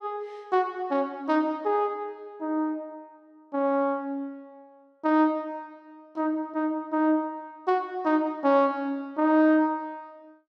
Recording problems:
none

